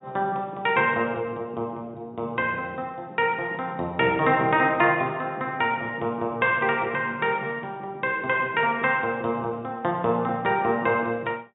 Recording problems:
treble missing; nothing above 4 kHz

